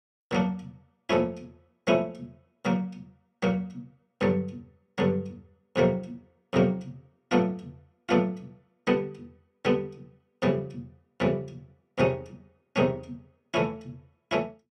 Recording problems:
none

